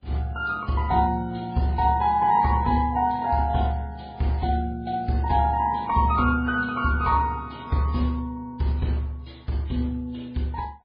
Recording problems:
lossy codec; Vorbis, then MP3, log-spectral distance 2 dB, nothing above 4.2 kHz

